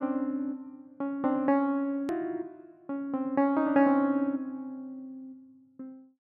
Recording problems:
click at an edit; at 2 s

